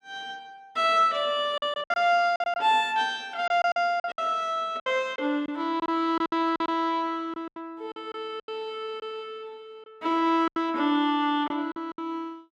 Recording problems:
lost packets; 9% of the sound replaced, filled with silence

